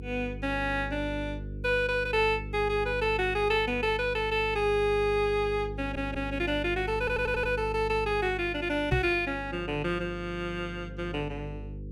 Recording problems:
hum; 50 Hz, harmonics up to 500 Hz, SNR 11 dB
audio stuttering; at 6 s and at 7 s
microphone thump; at 9 s; peak +4 dB vs average level

